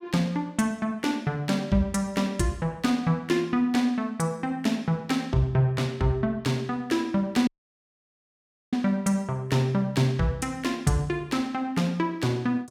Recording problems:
audio cutting out; at 7.5 s for 1.5 s

